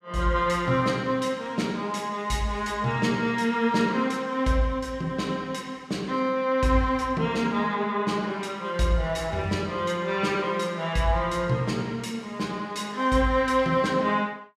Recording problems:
none

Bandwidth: 14.5 kHz